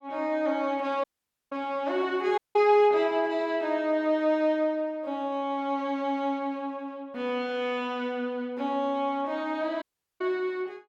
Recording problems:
audio cutting out; at 1 s, at 2.5 s and at 10 s

